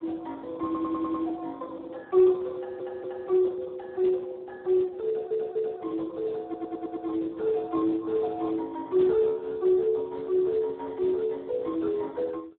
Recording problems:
phone line; 280 Hz to 2 kHz, Speex
audio stuttering; 4 times, first at 0.5 s
static burst; at 4 s and at 9 s; peak -19 dB vs average level

